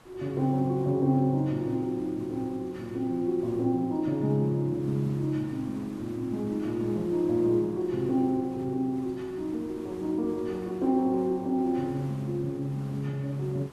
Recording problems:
hiss; SNR 22 dB

